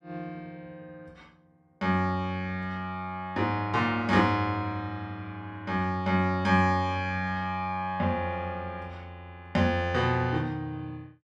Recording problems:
none

